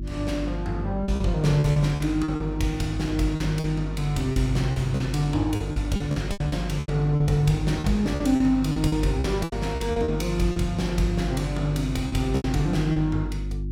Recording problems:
electrical hum; 50 Hz, harmonics up to 350 Hz, SNR 7 dB
packet loss; 11% of the sound replaced, filled with repeated pitch periods

